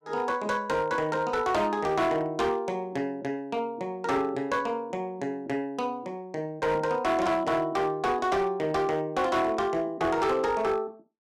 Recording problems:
distorted audio; hard clipping, signal-to-distortion ratio 12 dB

